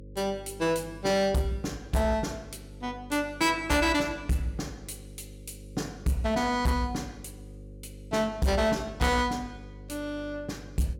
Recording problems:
distorted audio; hard clipping, uneven, signal-to-distortion ratio 10 dB
hum; 50 Hz, harmonics up to 550 Hz, SNR 18 dB

